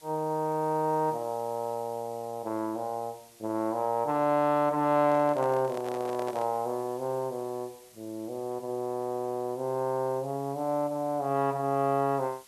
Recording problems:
background hiss; slope 0 dB per octave, SNR 24 dB
microphone handling noise; from 5 to 6.5 s; peak -5 dB vs average level

